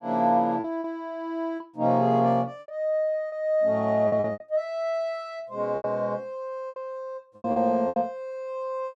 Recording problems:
lost packets; 9% of the sound replaced, filled with repeated pitch periods

